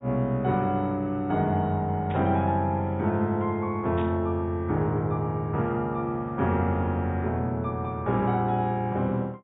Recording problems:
treble missing; nothing above 4 kHz
burst of static; at 2 s and at 4 s; peak -12 dB vs average level

